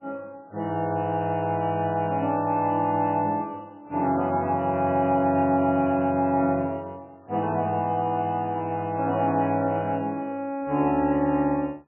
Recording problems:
lossy codec; MP3, log-spectral distance 2 dB, nothing above 2.5 kHz

